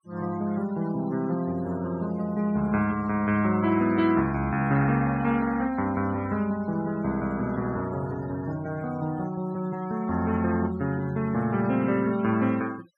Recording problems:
denoising artefacts; signal-to-artefact ratio 19 dB

